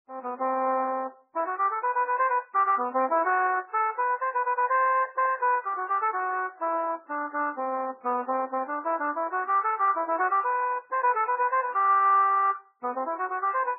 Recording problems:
lossy codec; MP2, then MP3, log-spectral distance 4 dB, nothing above 2.6 kHz

